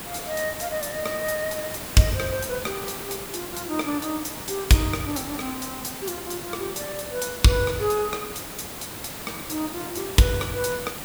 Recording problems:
hiss; slope -3 dB per octave, SNR 7 dB

